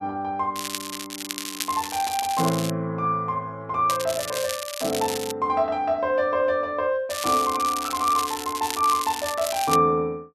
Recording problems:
crackling; from 0.5 to 2.5 s, from 4 to 5.5 s and from 7 to 10 s; loose cable, SNR 7 dB

